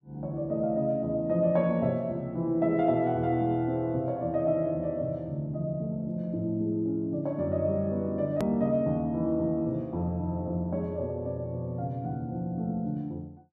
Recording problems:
click at an edit; at 8.5 s

